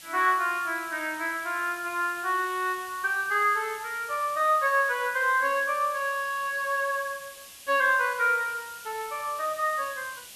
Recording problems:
background hiss; SNR 17 dB

